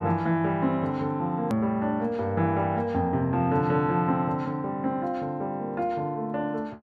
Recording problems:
click at an edit; at 1.5 s

